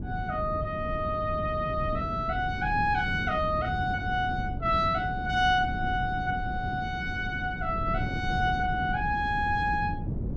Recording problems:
wind noise; below 200 Hz, SNR 6 dB

